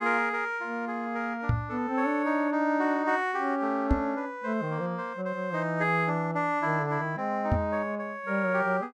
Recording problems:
microphone bump; at 1.5 s, at 4 s and at 7.5 s; peak +6 dB vs average level

